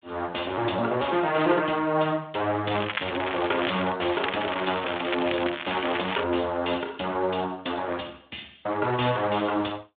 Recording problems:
telephone audio; 280 Hz to 3.6 kHz, Speex
crackling; from 2.5 to 4 s and from 4 to 6 s; loose cable, SNR 5 dB

